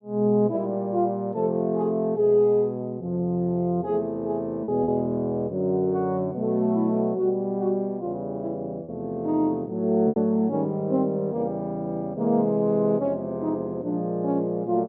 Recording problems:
packet loss; 1.3% of the sound replaced, filled with repeated pitch periods

